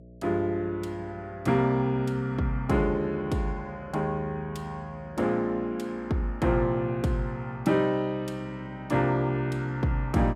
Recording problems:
hum; 60 Hz, harmonics up to 660 Hz, SNR 22 dB

